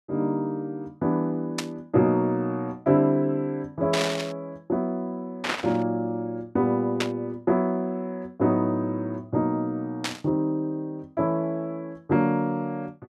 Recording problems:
static burst; 5 times, first at 1.5 s; peak +4 dB vs average level

